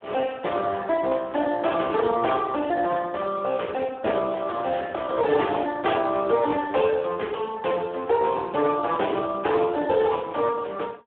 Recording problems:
telephone audio; 300 Hz to 3.5 kHz, Speex

